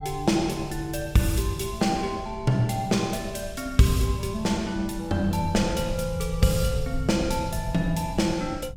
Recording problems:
low-frequency rumble; below 100 Hz, SNR 12 dB

